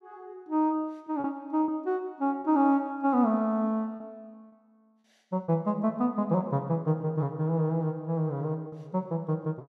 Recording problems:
lost packets; 3% of the sound replaced, filled with repeated pitch periods

